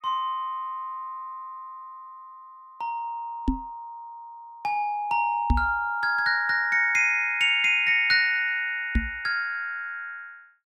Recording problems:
microphone bump; at 3.5 s, at 5.5 s and at 9 s; peak +5 dB vs average level

